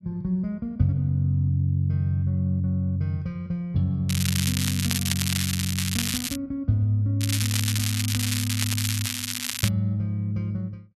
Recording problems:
crackle; from 4 to 6.5 s and from 7 to 9.5 s; loose cable, SNR 2 dB

